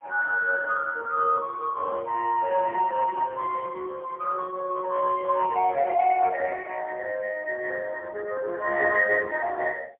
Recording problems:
telephone audio; 390 Hz to 2.8 kHz, AMR-NB, then MP3

